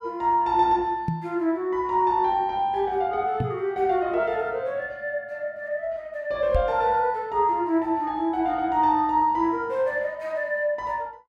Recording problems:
knock on the microphone; at 1 s, at 3.5 s and at 6.5 s; peak +2 dB vs average level

